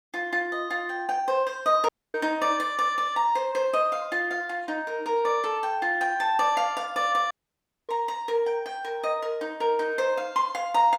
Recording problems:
audio cutting out; at 2 s and at 7.5 s for 0.5 s

